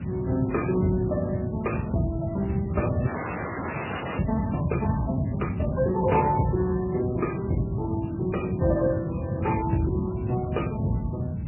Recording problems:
lossy compression; Speex, then MP3, log-spectral distance 5 dB, nothing above 2.7 kHz
background hiss; SNR 27 dB
low-frequency rumble; below 200 Hz, SNR 3 dB
audio freezing; at 3 s for 1 s

